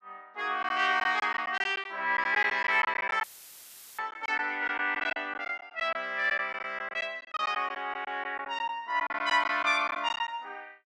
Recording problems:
lost packets; 10% of the sound replaced, filled with silence
dropout; at 3 s for 1 s; filled with static

